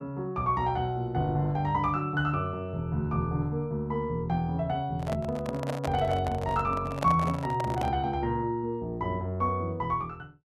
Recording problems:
microphone handling noise; from 5 to 8 s; peak +1 dB vs average level

